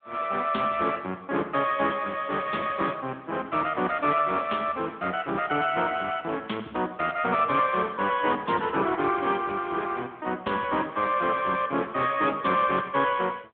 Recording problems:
telephone audio; 220 Hz to 3.5 kHz, AMR-NB

